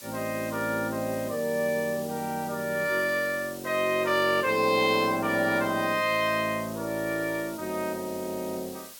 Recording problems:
background hiss; slope +2 dB per octave, SNR 16 dB

